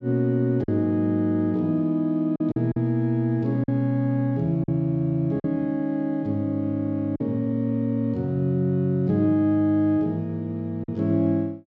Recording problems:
lost packets; 3% of the sound replaced, filled with silence

